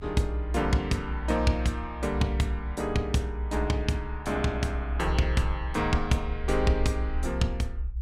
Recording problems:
low-frequency rumble; below 64 Hz, strongest tone 60 Hz, SNR 5 dB

